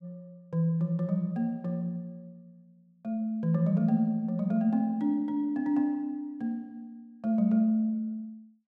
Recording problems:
none

